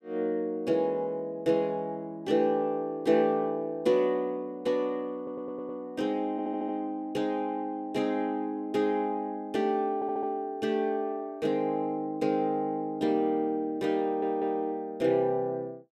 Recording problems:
audio stuttering; 4 times, first at 5 s

